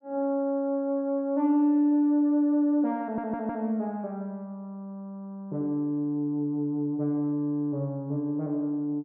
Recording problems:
audio stuttering; at 3 s

